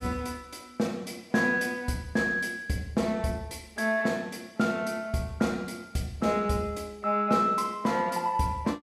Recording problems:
none

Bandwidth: 15 kHz